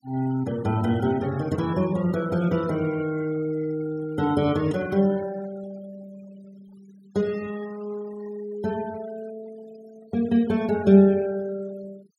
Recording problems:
noise reduction artefacts; signal-to-artefact ratio 21 dB

